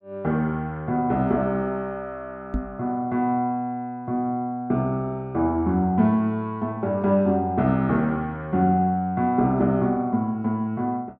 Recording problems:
microphone thump; at 2.5 s; peak 0 dB vs average level

